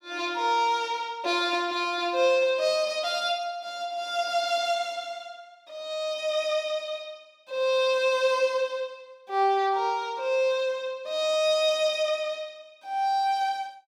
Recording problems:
none

